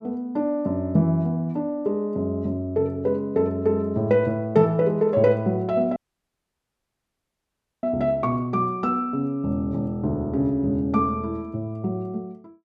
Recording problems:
dropout; at 6 s for 2 s

